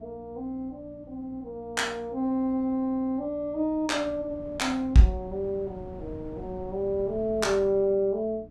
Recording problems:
electrical hum; 60 Hz, harmonics up to 300 Hz, SNR 23 dB
wind noise; below 240 Hz, SNR 19 dB

